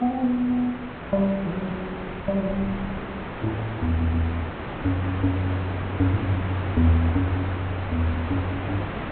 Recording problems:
treble cut off; nothing above 4 kHz
hiss; SNR 7 dB
wind noise; below 210 Hz, SNR 21 dB
audio stuttering; at 4 s

